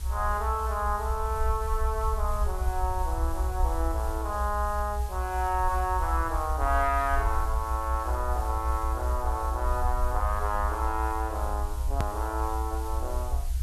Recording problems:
hiss; slope -1 dB per octave, SNR 16 dB
low-frequency rumble; below 66 Hz, SNR 1 dB
hard cut with a click; at 12 s

